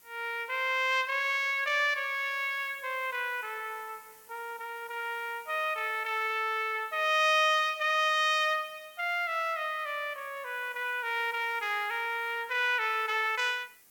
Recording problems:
hiss; slope -1 dB per octave, SNR 25 dB

